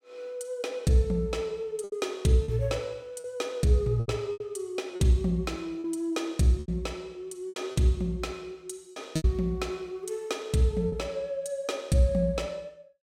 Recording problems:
lost packets; 6% of the sound replaced, filled with repeated pitch periods

